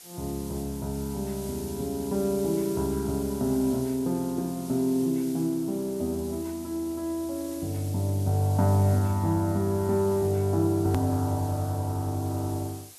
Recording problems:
hiss; SNR 16 dB
hard cut with a click; at 11 s

